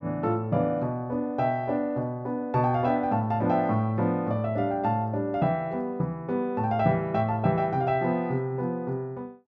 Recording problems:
none

